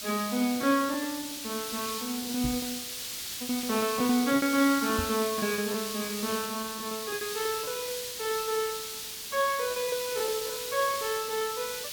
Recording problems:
background hiss; SNR 4 dB
lost packets; 16% of the sound replaced, filled with repeated pitch periods
knock on the microphone; at 2.5 s and at 5 s; peak +1 dB vs average level
crackle; 4 times, first at 2.5 s; loose cable, SNR 28 dB

